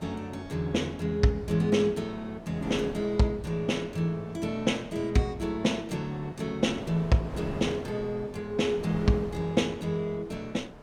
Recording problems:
wind on the microphone; below 660 Hz, SNR 14 dB

